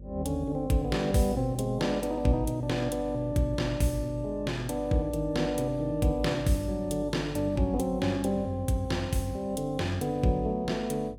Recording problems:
hum; 50 Hz, harmonics up to 550 Hz, SNR 15 dB

